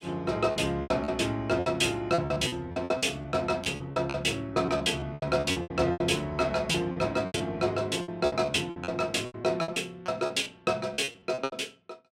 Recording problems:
lost packets; 17% of the sound replaced, filled with repeated pitch periods

